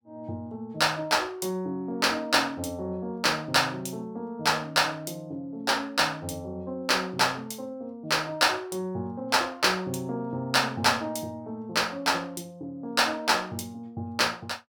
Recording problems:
none

